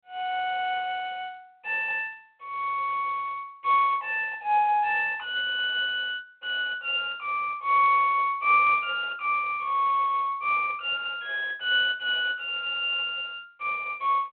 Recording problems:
phone line; 300 Hz to 3.3 kHz, G.726

